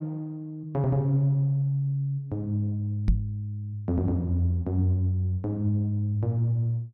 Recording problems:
microphone bump; at 3 s; peak +7 dB vs average level

